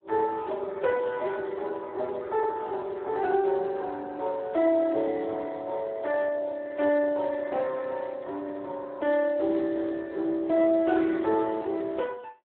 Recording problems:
phone line; 280 Hz to 3 kHz, Speex

